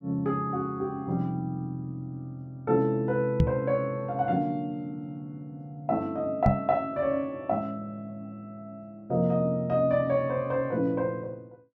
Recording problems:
microphone thump; at 3.5 s and at 6.5 s; peak +9 dB vs average level

